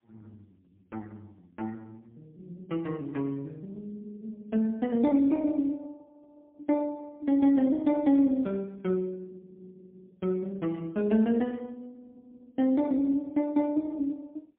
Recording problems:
telephone audio; 190 Hz to 3.3 kHz, AMR-NB, then MP3

